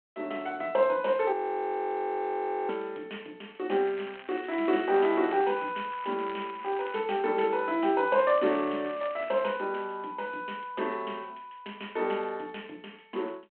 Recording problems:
telephone audio; 240 Hz to 3.2 kHz, G.726
audio freezing; at 1.5 s for 1.5 s
crackle; from 4 to 6 s, at 6 s and from 8 to 9.5 s; loose cable, SNR 18 dB

